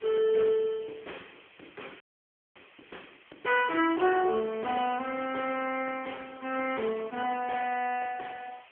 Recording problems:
telephone audio; 260 Hz to 3.3 kHz, AMR-NB
background hiss; SNR 26 dB
frozen audio; at 2 s for 0.5 s

